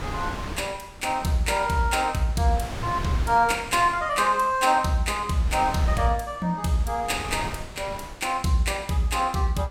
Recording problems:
wind on the microphone; below 1 kHz, SNR 13 dB

